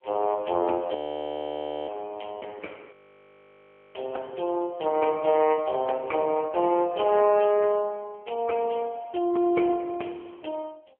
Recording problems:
telephone audio; 280 Hz to 3.2 kHz, AMR-NB
audio freezing; at 1 s for 1 s and at 3 s for 1 s

